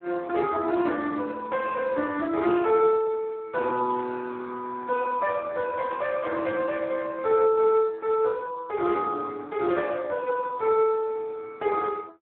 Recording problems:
phone line; 260 Hz to 3 kHz, Speex

